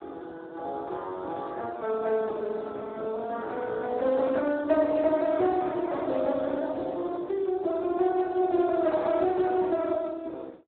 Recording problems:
telephone audio; 260 Hz to 2.2 kHz, Speex

